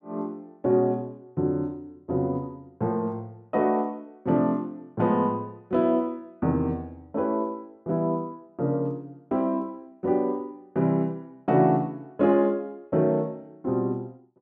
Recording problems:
none

